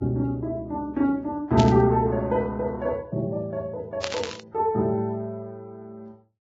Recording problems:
lossy compression; Vorbis, log-spectral distance 2 dB
burst of static; at 1.5 s and at 4 s; peak 0 dB vs average level

